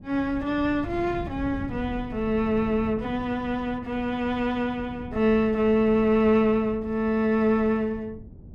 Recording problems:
wind noise; below 200 Hz, SNR 16 dB

